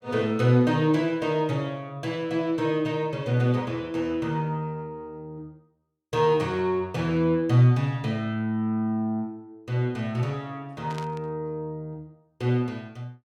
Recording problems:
static burst; at 11 s; peak -10 dB vs average level

